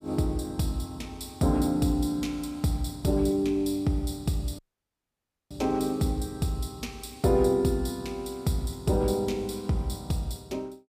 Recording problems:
dropout; at 4.5 s for 1 s

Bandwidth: 15 kHz